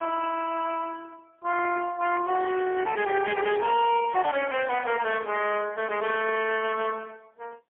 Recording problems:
telephone audio; 280 Hz to 2.9 kHz, AMR-NB, then MP3
distortion; soft clipping, signal-to-distortion ratio 10 dB

